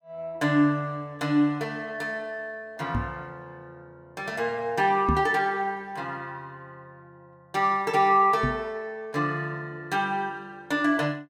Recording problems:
knock on the microphone; at 3 s, at 5 s and at 8.5 s; peak +4 dB vs average level

